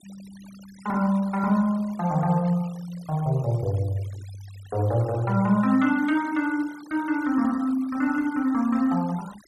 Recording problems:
noise reduction artefacts; signal-to-artefact ratio 23 dB

